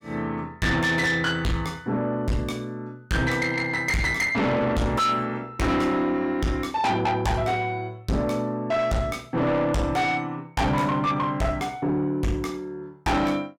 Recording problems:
distorted audio; soft clipping, signal-to-distortion ratio 6 dB

